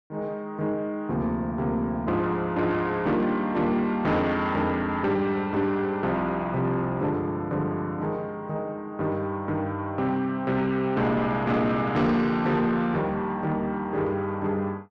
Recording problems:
distorted audio; soft clipping, signal-to-distortion ratio 11 dB

